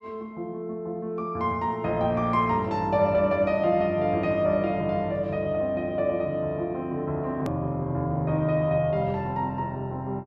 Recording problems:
hard cut with a click; at 7.5 s

